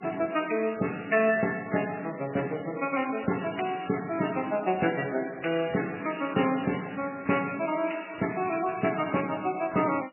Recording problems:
lossy compression; MP3, log-spectral distance 8 dB, nothing above 2.7 kHz

